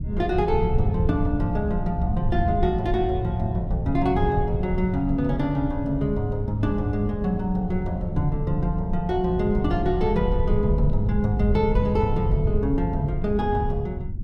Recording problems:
low-frequency rumble; below 110 Hz, SNR 3 dB

